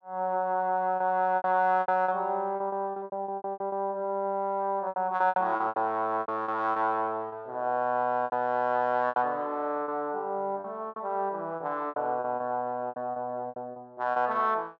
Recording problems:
lost packets; 14% of the sound replaced, filled with repeated pitch periods

